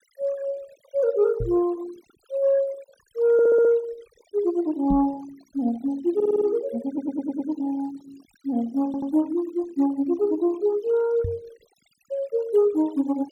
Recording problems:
denoising artefacts; signal-to-artefact ratio 23 dB
knock on the microphone; at 1.5 s, at 5 s and at 11 s; peak -1 dB vs average level
stutter; 4 times, first at 3.5 s

